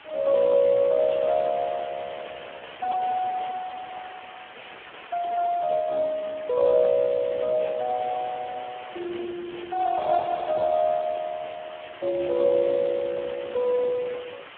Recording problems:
phone line; 280 Hz to 2.9 kHz, Speex
background hiss; SNR 17 dB

